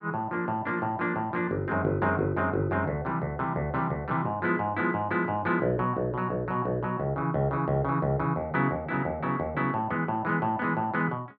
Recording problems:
none

